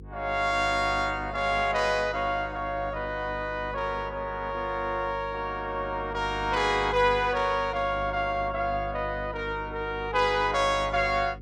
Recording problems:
hum; 50 Hz, harmonics up to 500 Hz, SNR 14 dB

